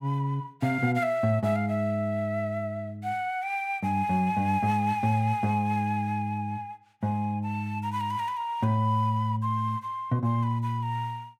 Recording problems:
none

